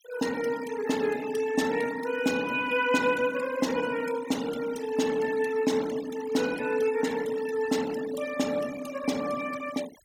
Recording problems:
denoising artefacts; signal-to-artefact ratio 14 dB

